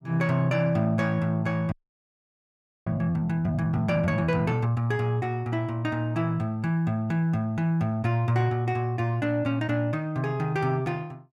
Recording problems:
frozen audio; at 1.5 s for 1 s

